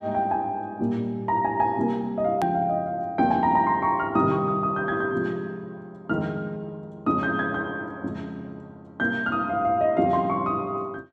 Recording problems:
edit click; at 2.5 s

